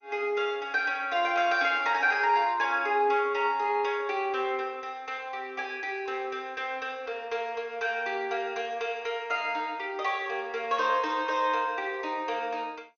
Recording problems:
lossy compression; MP2, log-spectral distance 2 dB, nothing above 6.3 kHz

